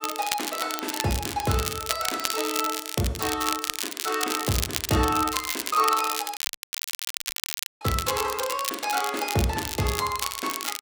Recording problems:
crackle; vinyl, SNR 3 dB
audio cutting out; at 6.5 s for 1.5 s

